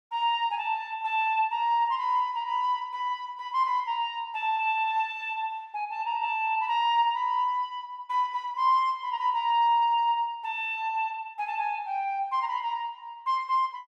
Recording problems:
none

